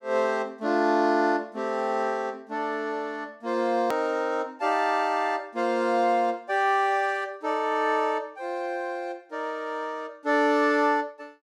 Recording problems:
click at an edit; at 4 s

